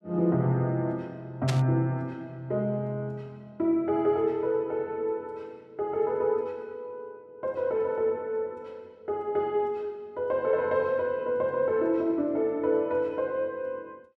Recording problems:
static burst; at 1.5 s; peak 0 dB vs average level

